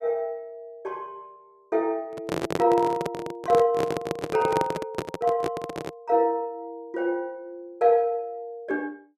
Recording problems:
microphone handling noise; from 2 to 6 s; peak +3 dB vs average level

